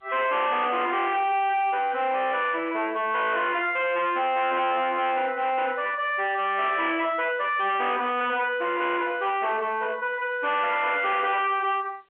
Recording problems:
phone line; 280 Hz to 3.4 kHz, G.711
distortion; hard clipping, uneven, signal-to-distortion ratio 5 dB

